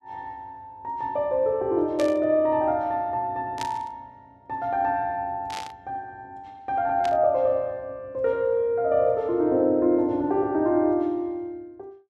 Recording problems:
burst of static; 4 times, first at 2 s; peak -6 dB vs average level

